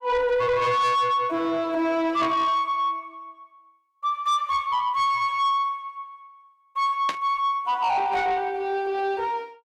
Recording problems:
distortion; soft clipping, signal-to-distortion ratio 10 dB
burst of static; at 7 s; peak -2 dB vs average level

